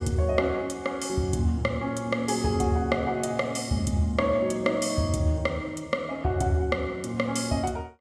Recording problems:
none

